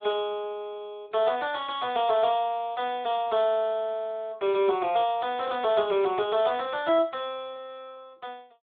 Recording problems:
phone line; 280 Hz to 3.5 kHz, Speex

